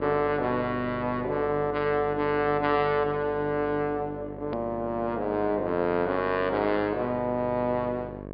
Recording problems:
treble missing; nothing above 5 kHz
hum; 50 Hz, harmonics up to 1.8 kHz, SNR 12 dB
click at an edit; at 4.5 s

